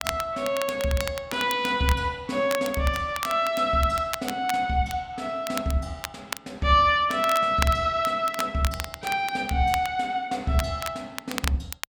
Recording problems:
crackling; vinyl, SNR 11 dB

